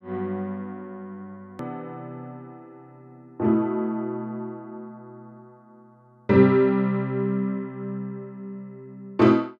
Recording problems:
hard cut with a click; at 1.5 s

